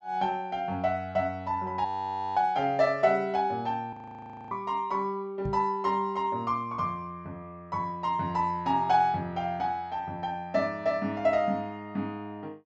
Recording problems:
treble cut off; nothing above 8 kHz
frozen audio; at 2 s for 0.5 s and at 4 s for 0.5 s
microphone bump; at 5.5 s; peak -2 dB vs average level

